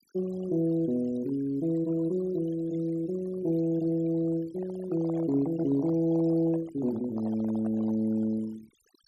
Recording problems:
denoising artefacts; signal-to-artefact ratio 22 dB
handling noise; from 4.5 to 8 s; peak -11 dB vs average level

